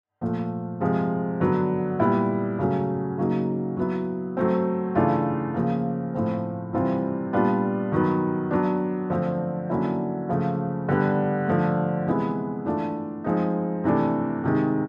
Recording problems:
none

